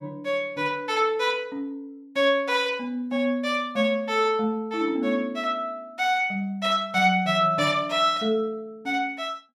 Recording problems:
none

